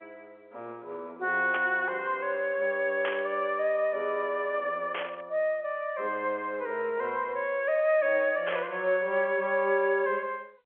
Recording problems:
telephone audio; 280 Hz to 3.5 kHz, G.711
burst of static; 4 times, first at 1.5 s; peak -2 dB vs average level

